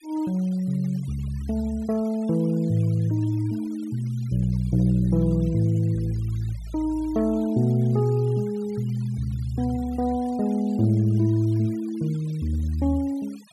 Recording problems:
denoising artefacts; signal-to-artefact ratio 26 dB

